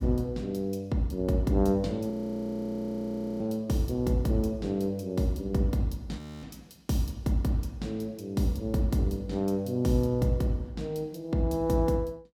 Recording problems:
audio freezing; at 2 s for 1.5 s and at 6 s

